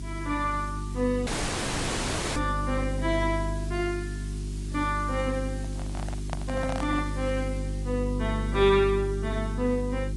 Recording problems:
lossy codec; AAC, log-spectral distance 5 dB, nothing above 9.5 kHz
electrical hum; 50 Hz, harmonics up to 400 Hz, SNR 4 dB
hiss; slope +1 dB per octave, SNR 19 dB
audio cutting out; at 1.5 s for 1 s
microphone handling noise; from 5.5 to 7 s; peak 0 dB vs average level

